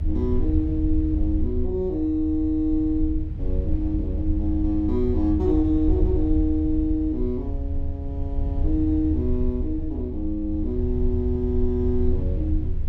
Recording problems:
low-frequency rumble; below 78 Hz, SNR 2 dB

